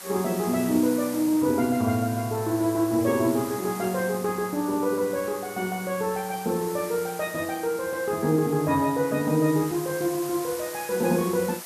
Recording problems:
background hiss; SNR 13 dB

